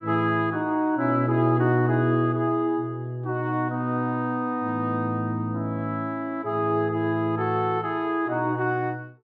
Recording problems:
none

